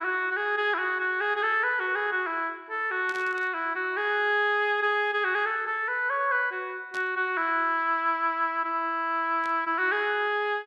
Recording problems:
static burst; at 3 s, at 7 s and at 9.5 s; peak -13 dB vs average level

